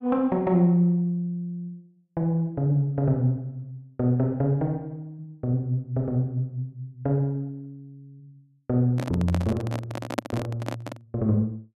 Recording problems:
handling noise; from 9 to 11 s; peak +3 dB vs average level

